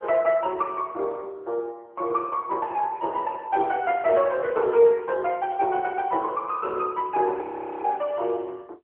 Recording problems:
telephone audio; 300 Hz to 3 kHz, AMR-NB
audio freezing; at 7.5 s

